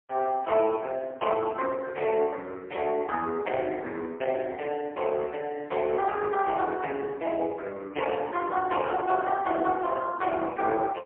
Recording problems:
telephone audio; 280 Hz to 3.2 kHz, AMR-NB, then MP3

